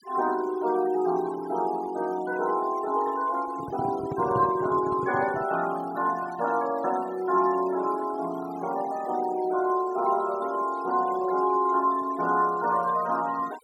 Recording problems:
noise reduction artefacts; signal-to-artefact ratio 18 dB
handling noise; from 3.5 to 5.5 s; peak -2 dB vs average level

